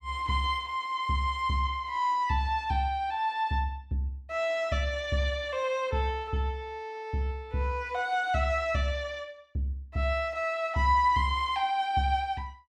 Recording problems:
none

